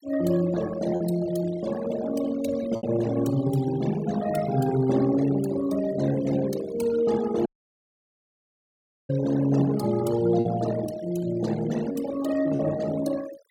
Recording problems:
noise reduction artefacts; signal-to-artefact ratio 16 dB
packet loss; 1.9% of the sound replaced, filled with repeated pitch periods
audio cutting out; at 7.5 s for 1.5 s

